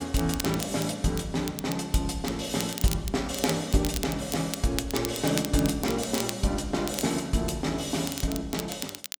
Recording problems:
crackle; vinyl, SNR 9 dB

